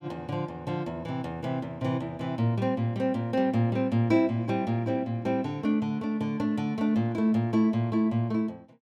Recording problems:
none

